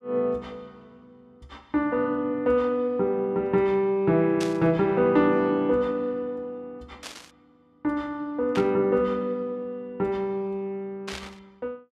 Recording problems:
burst of static; 4 times, first at 4.5 s; peak -5 dB vs average level

